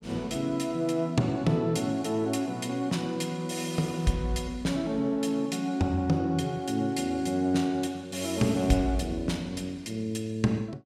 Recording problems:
none

